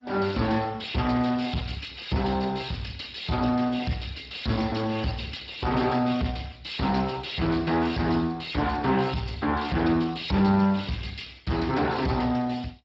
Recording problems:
codec artefacts; MP2, then Speex, log-spectral distance 9 dB
distortion; soft clipping, signal-to-distortion ratio 10 dB

